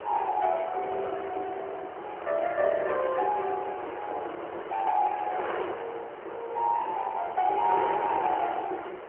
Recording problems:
phone line; 320 Hz to 3.3 kHz, AMR-NB
wind noise; below 1.3 kHz, SNR 8 dB

